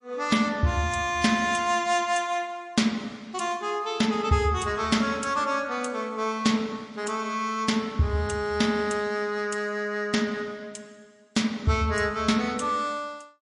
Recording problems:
codec artefacts; MP3, log-spectral distance 2 dB, nothing above 10.4 kHz

